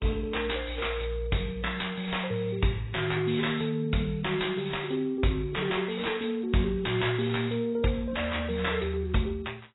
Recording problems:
codec artefacts; AAC, log-spectral distance 7 dB, nothing above 3.8 kHz
distorted audio; soft clipping, signal-to-distortion ratio 11 dB

